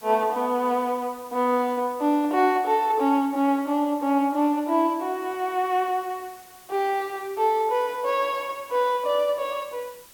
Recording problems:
background hiss; slope -1 dB per octave, SNR 23 dB

